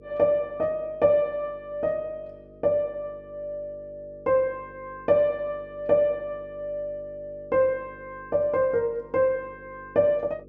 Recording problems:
hum; 50 Hz, harmonics up to 500 Hz, SNR 24 dB

